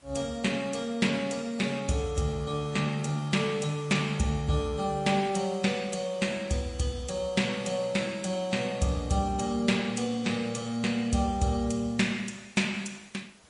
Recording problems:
lossy codec; MP3, log-spectral distance 3 dB, nothing above 10.1 kHz
hiss; slope -3 dB per octave, SNR 26 dB

